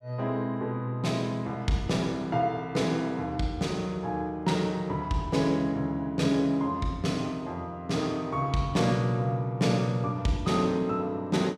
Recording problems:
none

